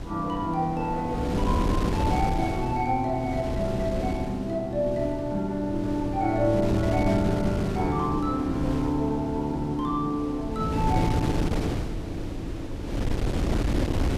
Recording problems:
wind noise; below 330 Hz, SNR 4 dB

